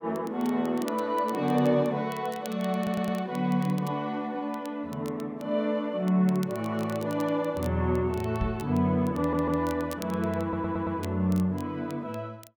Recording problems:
crackle; vinyl, SNR 22 dB
stutter; at 3 s, at 9 s and at 10 s
microphone thump; at 8.5 s; peak +1 dB vs average level

